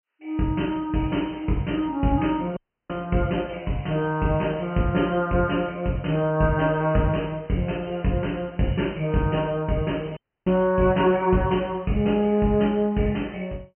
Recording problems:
treble cut off; nothing above 3.1 kHz
audio cutting out; at 2.5 s and at 10 s

